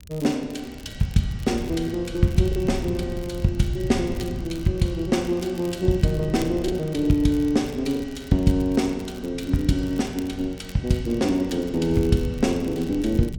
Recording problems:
wind on the microphone; below 130 Hz, SNR 13 dB
crackle; vinyl, SNR 23 dB
lost packets; 1.2% of the sound replaced, filled with the last packet

